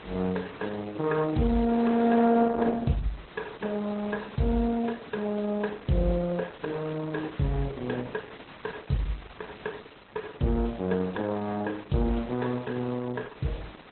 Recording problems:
lossy codec; Opus, then MP2, log-spectral distance 9 dB, nothing above 4 kHz
background hiss; SNR 18 dB

